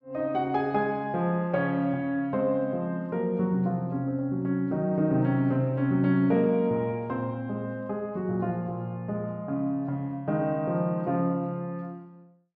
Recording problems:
none

